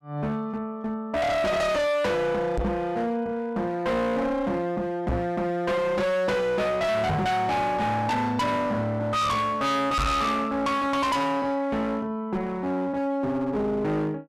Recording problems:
distortion; hard clipping, uneven, signal-to-distortion ratio 5 dB
microphone thump; 4 times, first at 2.5 s; peak +6 dB vs average level

